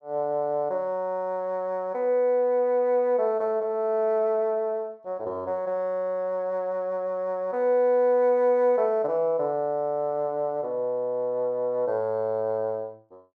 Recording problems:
none

